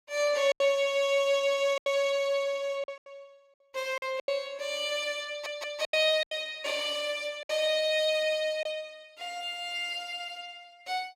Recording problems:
lost packets; 6% of the sound replaced, filled with silence
audio stuttering; at 5.5 s

